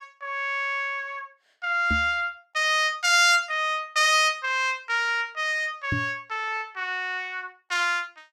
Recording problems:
microphone bump; at 2 s and at 6 s; peak -1 dB vs average level

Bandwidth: 16.5 kHz